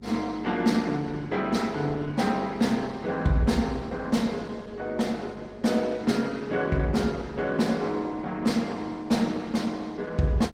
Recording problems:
lossy codec; Opus, log-spectral distance 3 dB, nothing above 19 kHz
hum; 50 Hz, harmonics up to 550 Hz, SNR 22 dB

